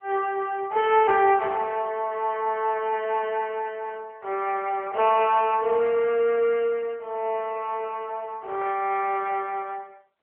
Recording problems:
telephone audio; 300 Hz to 3.3 kHz, AMR-NB

